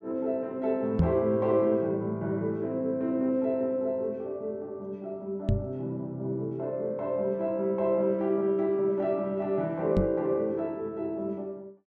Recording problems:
knock on the microphone; at 1 s, at 5.5 s and at 10 s; peak +8 dB vs average level

